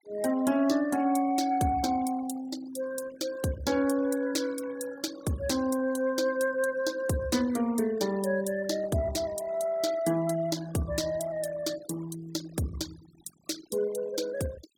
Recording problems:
noise reduction artefacts; signal-to-artefact ratio 17 dB

